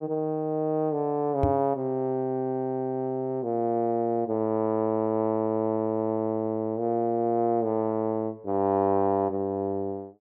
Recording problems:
microphone bump; at 1.5 s; peak +4 dB vs average level

